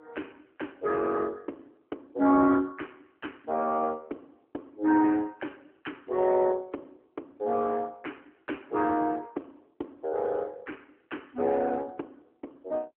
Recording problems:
telephone audio; 240 Hz to 3.1 kHz, AMR-NB

